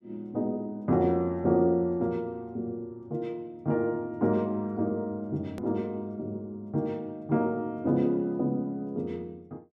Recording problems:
click at an edit; at 5.5 s

